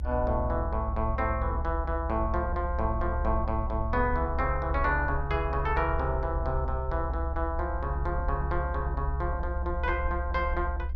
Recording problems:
low-frequency rumble; below 68 Hz, strongest tone 66 Hz, SNR 2 dB

